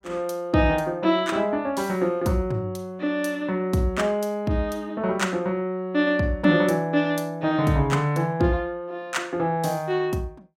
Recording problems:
none

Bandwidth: 16 kHz